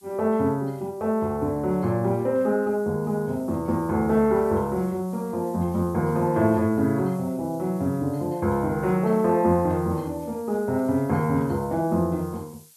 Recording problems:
background hiss; slope +4 dB per octave, SNR 27 dB

